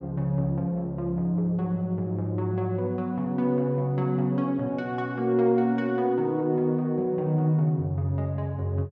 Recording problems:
none

